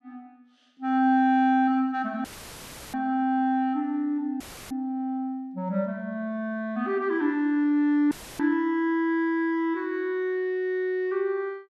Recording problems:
dropout; at 2.5 s for 0.5 s, at 4.5 s and at 8 s; filled with static

